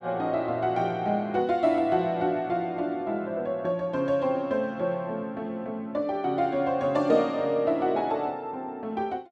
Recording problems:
none

